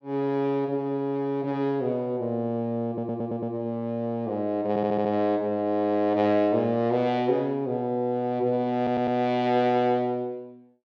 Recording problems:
audio stuttering; at 3 s, at 4.5 s and at 9 s

